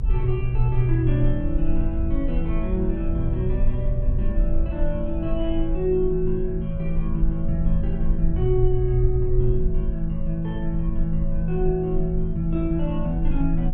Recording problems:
rumble; below 50 Hz, strongest tone 22 Hz, SNR 2 dB

